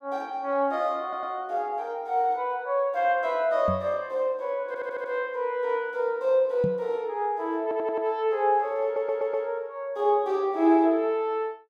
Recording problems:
audio stuttering; 4 times, first at 1 s
microphone thump; at 3.5 s and at 6.5 s; peak 0 dB vs average level

